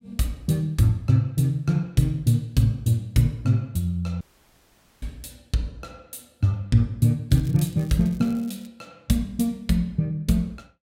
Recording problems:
audio cutting out; at 4 s for 1 s
crackling; from 7.5 to 8.5 s; loose cable, SNR 27 dB

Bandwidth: 16 kHz